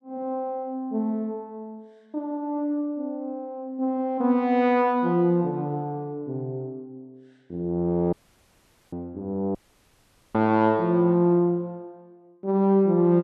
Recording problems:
audio cutting out; at 8 s for 1 s and at 9.5 s for 1 s

